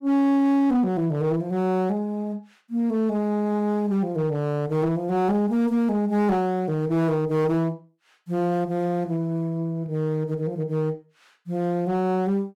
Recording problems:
distorted audio; hard clipping, signal-to-distortion ratio 10 dB

